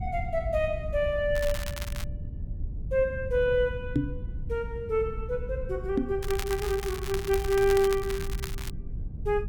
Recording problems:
low-frequency rumble; below 92 Hz, SNR 8 dB
crackle; at 1.5 s and from 6 to 8.5 s; loose cable, SNR 11 dB
knock on the microphone; at 4 s and at 6 s; peak +6 dB vs average level

